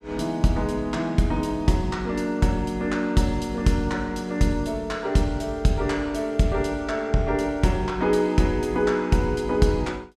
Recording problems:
none

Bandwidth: 15 kHz